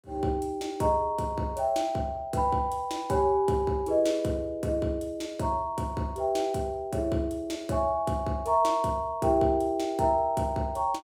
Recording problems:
none

